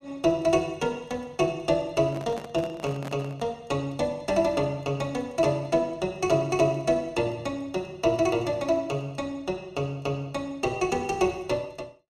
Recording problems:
microphone handling noise; from 2 to 3.5 s; peak -7 dB vs average level

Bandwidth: 14.5 kHz